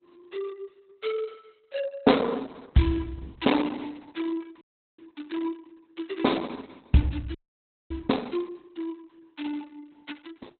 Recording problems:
lossy codec; Opus, log-spectral distance 4 dB, nothing above 4 kHz
audio freezing; at 4.5 s and at 7.5 s for 0.5 s

